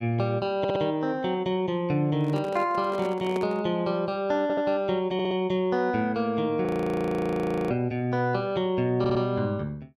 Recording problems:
audio stuttering; 4 times, first at 0.5 s
microphone handling noise; from 2 to 3.5 s; peak -4 dB vs average level
frozen audio; at 6.5 s for 1 s

